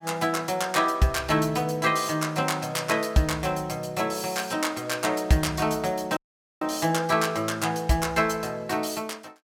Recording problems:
audio cutting out; at 6 s

